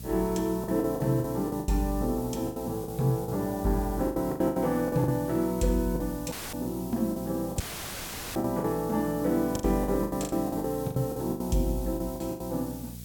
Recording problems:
hum; 60 Hz, harmonics up to 480 Hz, SNR 14 dB
background hiss; slope +5 dB per octave, SNR 16 dB
packet loss; 13% of the sound replaced, filled with the last packet
audio cutting out; at 6.5 s and at 7.5 s for 1 s; filled with static

